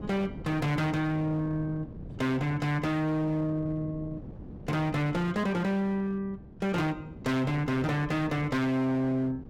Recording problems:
distorted audio; hard clipping, signal-to-distortion ratio 6 dB
wind on the microphone; below 320 Hz, SNR 15 dB

